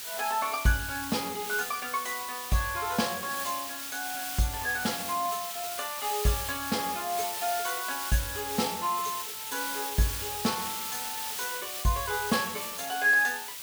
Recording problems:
background hiss; slope +3 dB per octave, SNR 4 dB

